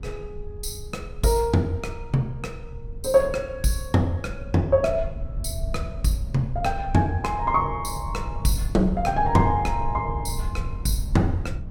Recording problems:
low-frequency rumble; below 84 Hz, SNR 9 dB

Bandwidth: 16.5 kHz